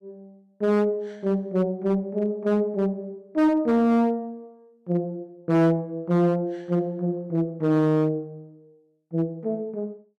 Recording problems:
distorted audio; hard clipping, signal-to-distortion ratio 11 dB

